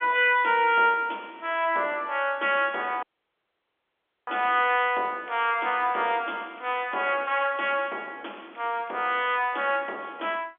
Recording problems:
telephone audio; 300 Hz to 3.5 kHz, G.711
dropout; at 3 s for 1 s

